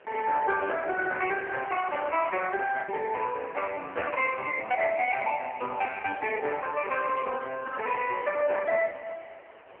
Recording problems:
phone line; 340 Hz to 2.3 kHz, AMR-NB
wind noise; below 1.8 kHz, SNR 22 dB
lost packets; 2% of the sound replaced, filled with the last packet

